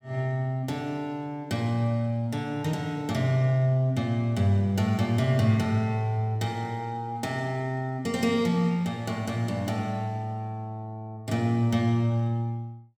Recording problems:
none

